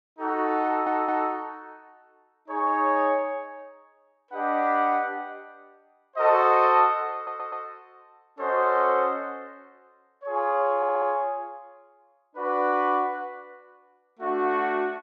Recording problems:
stutter; at 0.5 s, at 7 s and at 11 s

